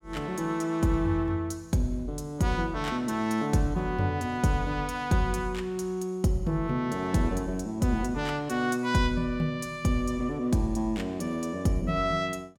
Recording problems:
none

